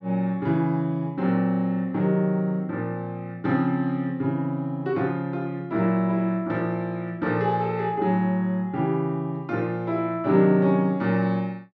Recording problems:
none

